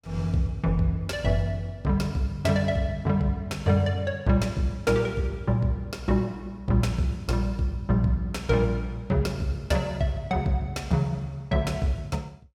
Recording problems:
none

